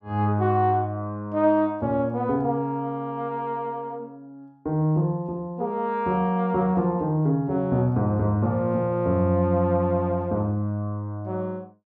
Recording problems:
none

